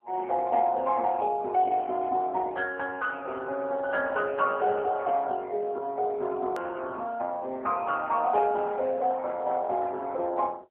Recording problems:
phone line; 300 Hz to 3.4 kHz, AMR-NB
hard cut with a click; at 6.5 s

